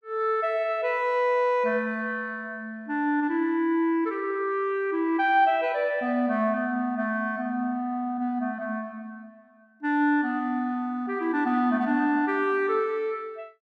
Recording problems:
none

